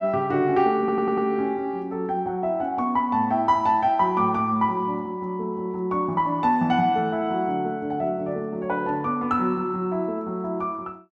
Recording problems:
stutter; at 1 s

